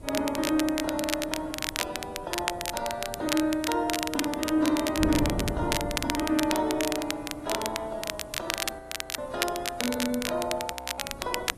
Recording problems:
codec artefacts; AAC, then AAC, log-spectral distance 5 dB, nothing above 11.3 kHz
background hiss; slope -1 dB per octave, SNR 27 dB
wind on the microphone; below 360 Hz, SNR 10 dB
crackling; vinyl, SNR 3 dB
frozen audio; at 9 s and at 11 s

